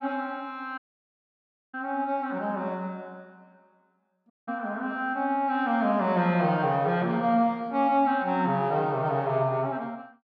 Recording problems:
audio cutting out; at 1 s for 1 s and at 4.5 s

